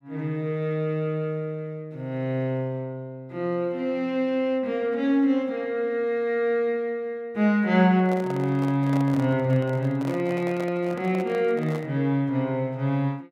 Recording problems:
handling noise; from 8 to 12 s; peak -7 dB vs average level

